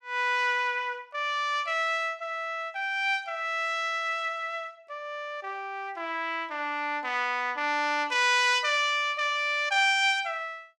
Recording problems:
none

